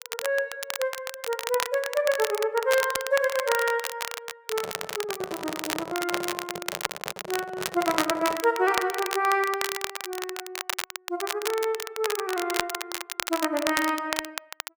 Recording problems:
crackle; vinyl, SNR 5 dB
handling noise; from 4.5 to 8.5 s; peak -4 dB vs average level

